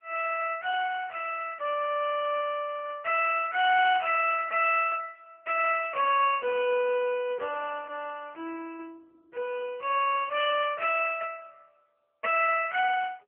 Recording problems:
telephone audio; 300 Hz to 3.2 kHz, AMR-NB

